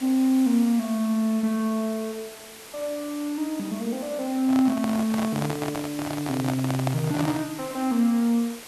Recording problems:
hiss; slope -1 dB per octave, SNR 15 dB
microphone handling noise; from 4.5 to 7.5 s; peak 0 dB vs average level

